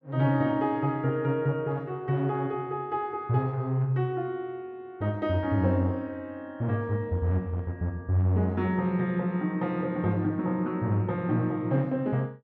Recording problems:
none

